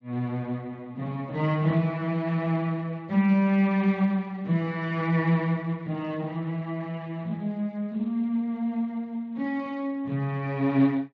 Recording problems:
codec artefacts; Speex, log-spectral distance 2 dB, nothing above 17.7 kHz

